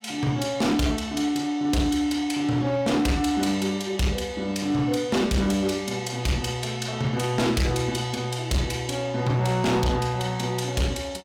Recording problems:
distorted audio; hard clipping, signal-to-distortion ratio 10 dB

